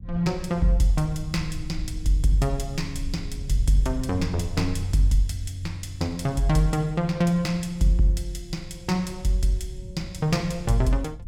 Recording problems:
low-frequency rumble; below 78 Hz, SNR 13 dB

